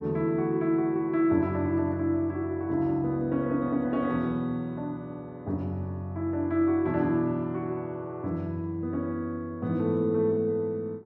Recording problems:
none

